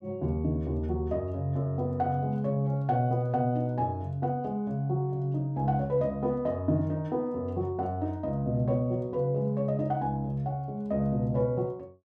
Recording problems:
none

